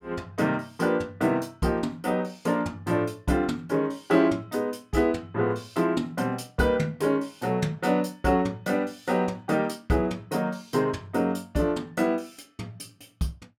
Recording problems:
none

